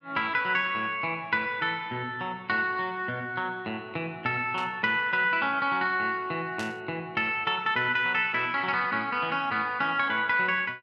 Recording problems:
burst of static; at 4.5 s and at 6.5 s; peak -8 dB vs average level

